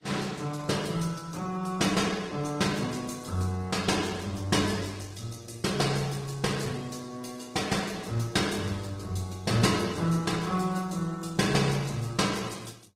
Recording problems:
lossy compression; Vorbis, then Opus, log-spectral distance 5 dB, nothing above 15.5 kHz

